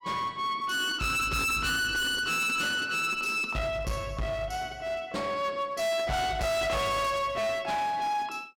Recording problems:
distortion; hard clipping, uneven, signal-to-distortion ratio 5 dB

